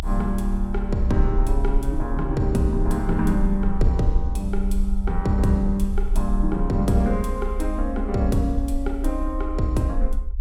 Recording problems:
low-frequency rumble; below 46 Hz, strongest tone 32 Hz, SNR 4 dB

